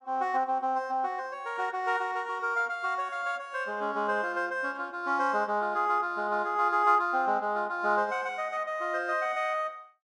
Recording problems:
none

